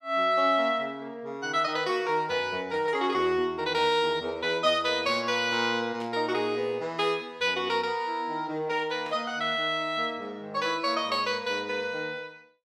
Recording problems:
burst of static; at 6 s and at 9 s; peak -14 dB vs average level

